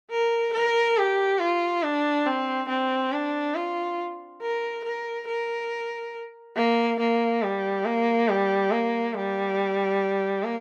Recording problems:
none

